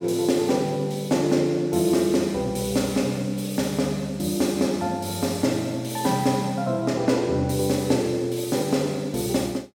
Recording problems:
none

